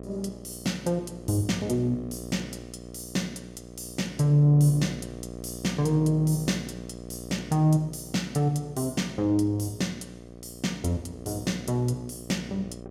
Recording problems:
hum; 60 Hz, harmonics up to 1.3 kHz, SNR 14 dB

